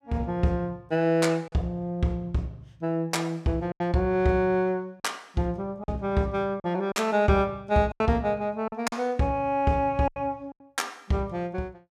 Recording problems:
lost packets; 5% of the sound replaced, filled with silence

